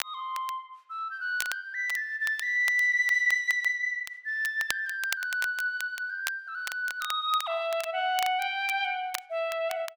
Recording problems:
crackling; vinyl, SNR 12 dB

